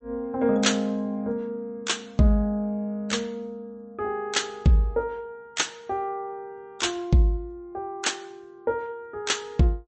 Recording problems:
codec artefacts; MP3, log-spectral distance 2 dB, nothing above 8.2 kHz

